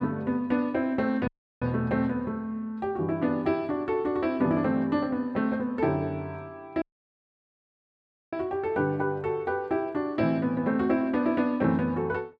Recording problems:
audio cutting out; at 1.5 s and at 7 s for 1.5 s

